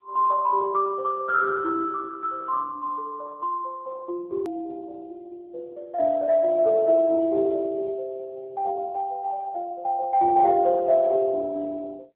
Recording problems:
phone line; 340 Hz to 2.2 kHz, AMR-NB
click at an edit; at 4.5 s

